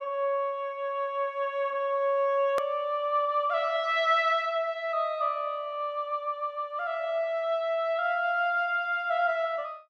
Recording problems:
click at an edit; at 2.5 s

